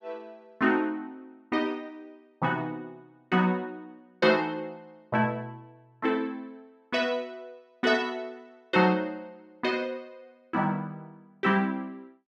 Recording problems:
none

